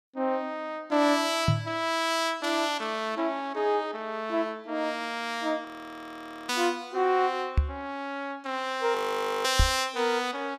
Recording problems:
microphone thump; at 1.5 s, at 7.5 s and at 9.5 s; peak +8 dB vs average level
frozen audio; at 5.5 s for 1 s and at 9 s for 0.5 s

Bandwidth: 15 kHz